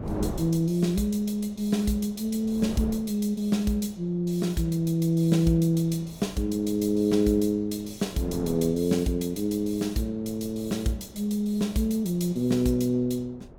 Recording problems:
wind noise; below 440 Hz, SNR 18 dB

